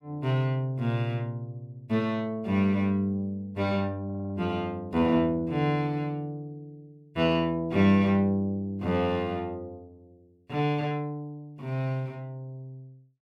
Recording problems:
audio stuttering; at 4 s

